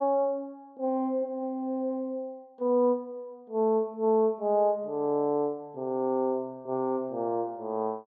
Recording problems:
none

